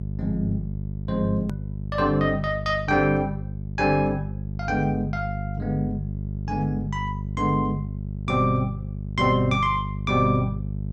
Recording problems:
hum; 50 Hz, harmonics up to 450 Hz, SNR 6 dB
click at an edit; at 1.5 s

